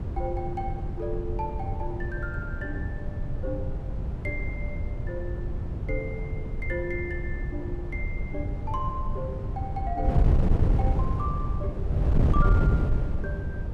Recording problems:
wind on the microphone; below 130 Hz, SNR -6 dB

